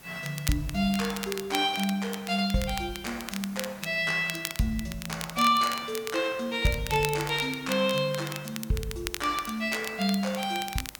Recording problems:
background hiss; slope -4 dB per octave, SNR 22 dB
crackling; vinyl, SNR 10 dB

